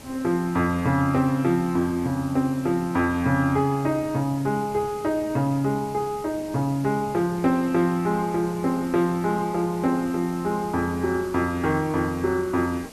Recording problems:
hiss; SNR 18 dB

